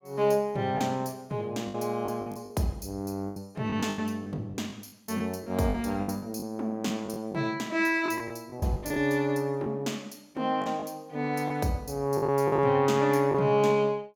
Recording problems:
packet loss; 9% of the sound replaced, filled with the last packet

